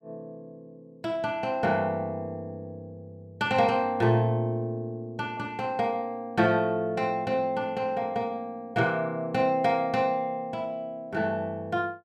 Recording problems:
none

